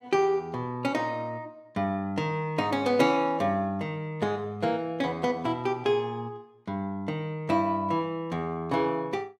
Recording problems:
none

